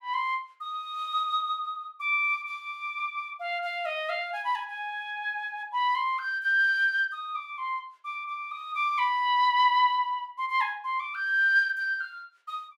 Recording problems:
none

